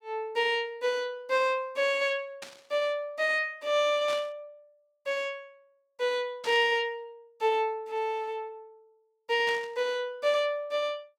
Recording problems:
static burst; 4 times, first at 2.5 s; peak -7 dB vs average level

